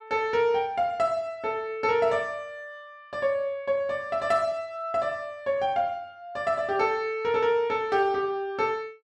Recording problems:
none

